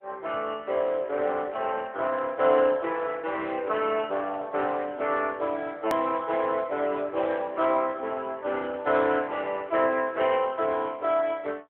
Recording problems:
phone line; 340 Hz to 3.6 kHz, AMR-NB
click at an edit; at 6 s

